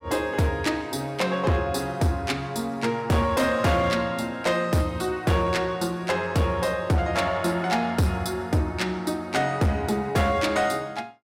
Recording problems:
distorted audio; hard clipping, signal-to-distortion ratio 10 dB

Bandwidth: 16 kHz